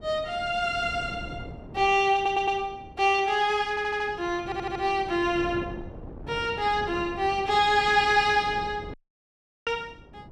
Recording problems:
wind on the microphone; below 390 Hz, SNR 17 dB
audio stuttering; at 2 s, at 3.5 s and at 4.5 s
dropout; at 9 s for 0.5 s

